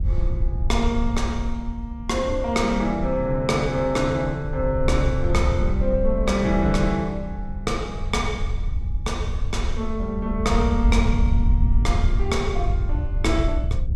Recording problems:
wind noise; below 76 Hz, SNR 2 dB

